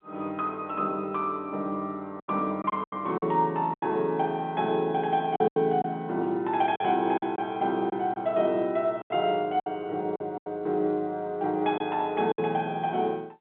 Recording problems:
telephone audio; 220 Hz to 4 kHz, G.711
packet loss; 7% of the sound replaced, filled with silence

